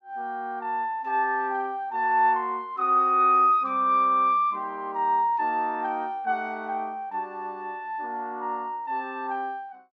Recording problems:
none

